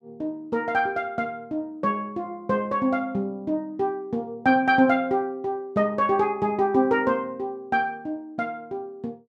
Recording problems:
none

